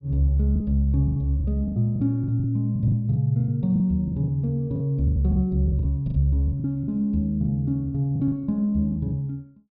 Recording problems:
low-pass filter; nothing above 5.5 kHz
packet loss; 14% of the sound replaced, filled with the last packet

